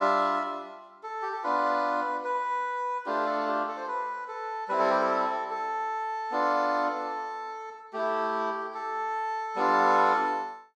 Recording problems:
none

